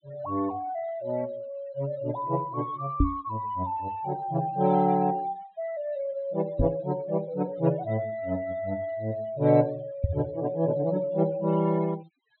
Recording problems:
treble cut off; nothing above 4.1 kHz
denoising artefacts; signal-to-artefact ratio 24 dB
microphone bump; at 3 s, at 6.5 s and at 10 s; peak +8 dB vs average level

